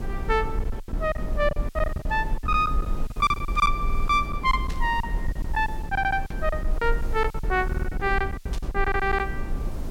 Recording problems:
background hiss; slope +2 dB per octave, SNR 27 dB
rumble; below 58 Hz, SNR 5 dB
lost packets; 15% of the sound replaced, filled with silence
audio stuttering; 4 times, first at 4 s
static burst; at 4.5 s, at 6.5 s and at 8.5 s; peak -9 dB vs average level

